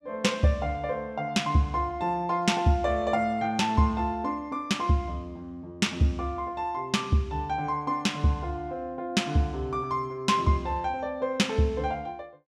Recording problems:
none

